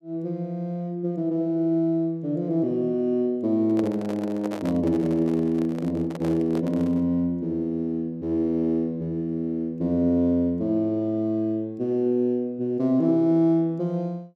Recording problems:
microphone handling noise; from 3.5 to 7 s; peak -5 dB vs average level

